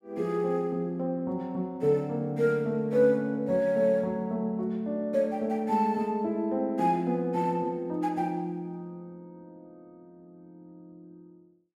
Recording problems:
none

